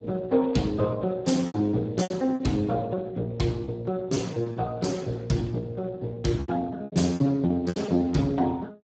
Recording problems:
codec artefacts; Speex, log-spectral distance 3 dB, nothing above 7.6 kHz
lost packets; 9% of the sound replaced, filled with repeated pitch periods

